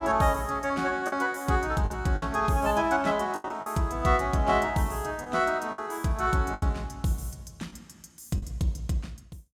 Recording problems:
lost packets; 6% of the sound replaced, filled with the last packet

